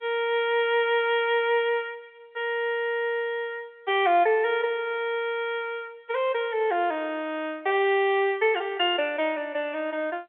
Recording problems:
telephone audio; 320 Hz to 3.7 kHz, G.711

